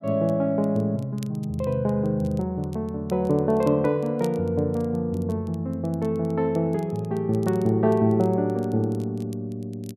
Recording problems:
crackle; vinyl, SNR 28 dB

